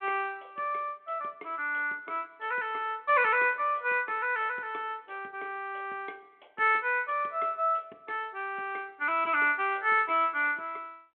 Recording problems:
phone line; 260 Hz to 3.4 kHz, G.726

